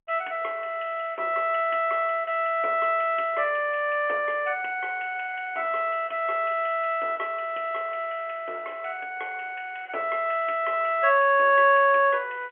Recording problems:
phone line; 320 Hz to 3.3 kHz, G.711

